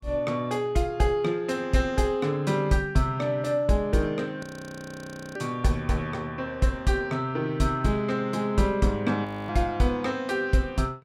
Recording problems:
audio freezing; at 4.5 s for 1 s and at 9.5 s

